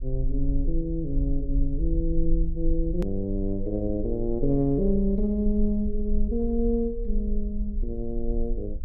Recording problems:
rumble; below 44 Hz, strongest tone 20 Hz, SNR 4 dB
hard cut with a click; at 3 s

